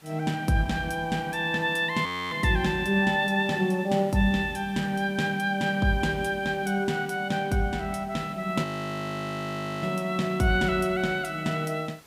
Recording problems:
hiss; slope -2 dB per octave, SNR 26 dB
frozen audio; at 2 s and at 8.5 s for 1 s

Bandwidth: 15.5 kHz